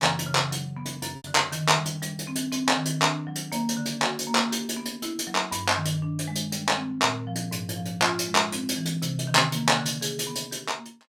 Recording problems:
packet loss; 0.7% of the sound replaced, filled with repeated pitch periods

